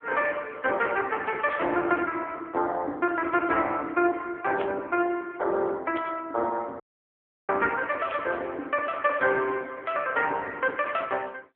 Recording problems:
phone line; 280 Hz to 3.5 kHz, AMR-NB
static burst; 4 times, first at 1.5 s; peak -4 dB vs average level
dropout; at 7 s for 0.5 s

